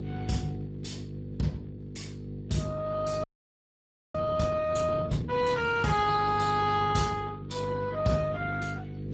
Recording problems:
lossy codec; Speex, log-spectral distance 4 dB, nothing above 7.8 kHz
electrical hum; 50 Hz, harmonics up to 500 Hz, SNR 8 dB
frozen audio; at 3 s for 1 s

